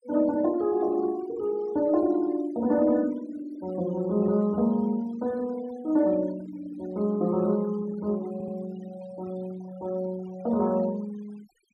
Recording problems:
denoising artefacts; signal-to-artefact ratio 23 dB
stutter; at 8.5 s

